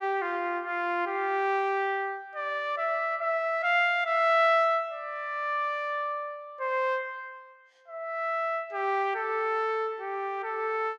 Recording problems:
none

